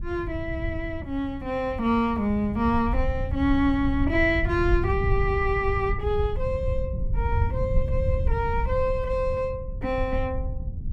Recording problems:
wind noise; below 90 Hz, SNR 4 dB

